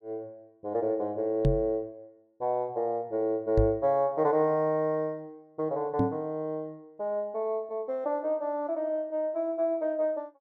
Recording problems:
microphone thump; at 1.5 s, at 3.5 s and at 6 s; peak +6 dB vs average level

